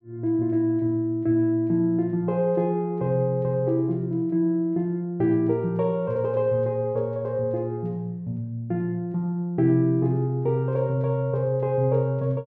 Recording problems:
none

